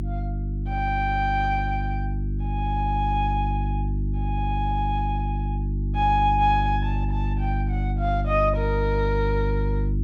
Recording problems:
mains hum; 50 Hz, harmonics up to 350 Hz, SNR 0 dB

